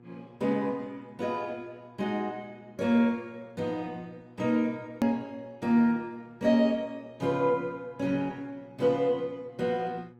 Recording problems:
lossy compression; Opus, log-spectral distance 2 dB, nothing above 17.7 kHz
hum; 60 Hz, harmonics up to 1.7 kHz, SNR 25 dB
hard cut with a click; at 5 s

